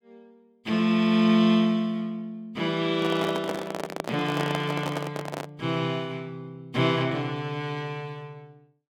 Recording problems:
handling noise; from 3 to 5.5 s; peak -1 dB vs average level

